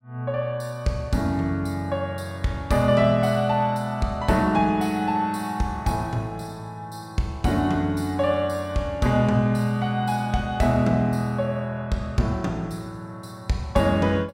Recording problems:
none

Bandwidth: 16 kHz